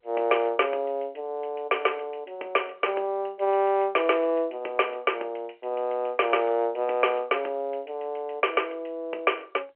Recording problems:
telephone audio; 320 Hz to 3.1 kHz, G.711

